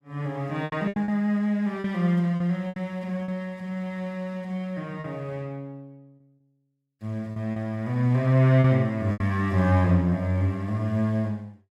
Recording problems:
packet loss; 6% of the sound replaced, filled with repeated pitch periods

